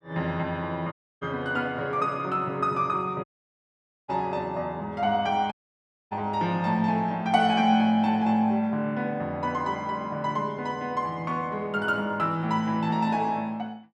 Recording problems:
dropout; at 1 s, at 3 s for 1 s and at 5.5 s for 0.5 s

